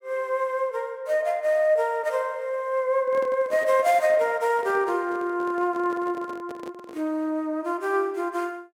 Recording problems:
handling noise; from 3 to 7 s; peak -12 dB vs average level

